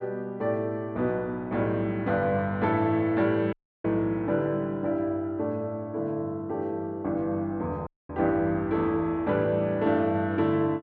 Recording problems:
audio cutting out; at 3.5 s and at 8 s

